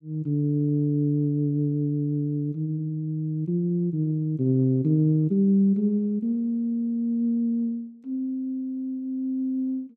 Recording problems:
none

